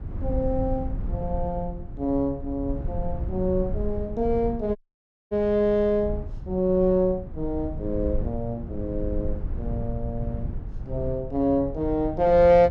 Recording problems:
low-frequency rumble; below 96 Hz, SNR 8 dB
dropout; at 5 s for 0.5 s

